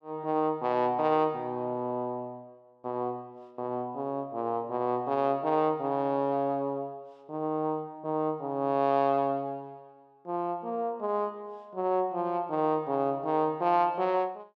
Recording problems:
none

